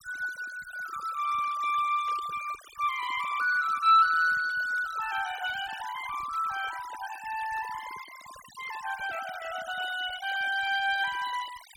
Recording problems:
noise reduction artefacts; signal-to-artefact ratio 15 dB
burst of static; at 2 s; peak -20 dB vs average level

